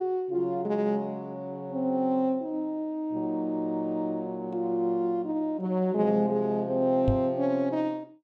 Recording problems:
microphone bump; at 7 s; peak +5 dB vs average level

